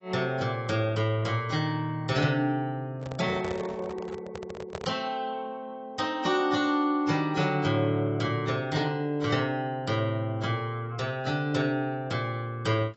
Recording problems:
lossy compression; AAC, log-spectral distance 2 dB, nothing above 7.8 kHz
handling noise; from 3 to 5 s; peak -4 dB vs average level

